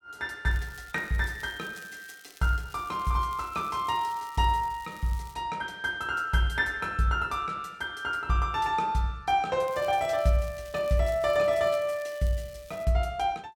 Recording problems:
crackling; from 0.5 to 5.5 s and from 9.5 to 13 s; loose cable, SNR 23 dB

